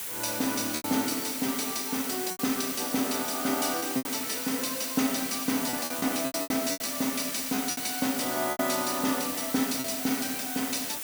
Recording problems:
background hiss; slope 0 dB per octave, SNR 3 dB
packet loss; 8% of the sound replaced, filled with repeated pitch periods

